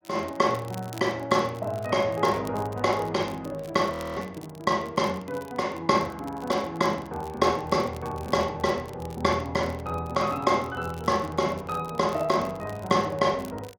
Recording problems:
crackle; vinyl, SNR 24 dB
frozen audio; at 4 s

